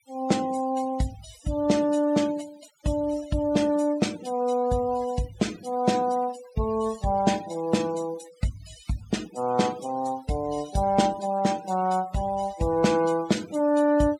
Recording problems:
noise reduction artefacts; signal-to-artefact ratio 20 dB

